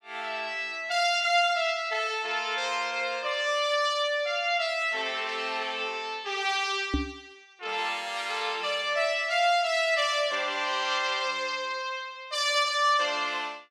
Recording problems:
microphone bump; at 7 s; peak +3 dB vs average level

